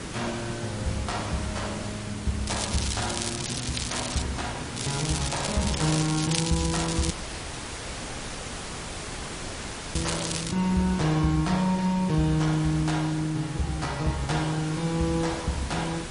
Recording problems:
lossy codec; MP3, log-spectral distance 10 dB, nothing above 10.4 kHz
hiss; slope -3 dB per octave, SNR 8 dB
crackle; from 2.5 to 4 s and from 5 to 11 s; loose cable, SNR 4 dB
dropout; at 7 s for 3 s

